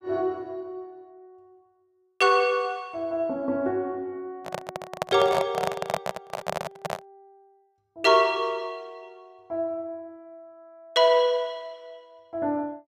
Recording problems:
handling noise; from 4.5 to 7 s; peak +3 dB vs average level

